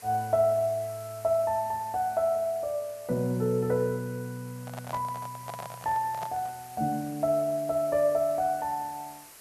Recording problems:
hiss; SNR 19 dB
handling noise; from 4.5 to 6.5 s; peak -6 dB vs average level

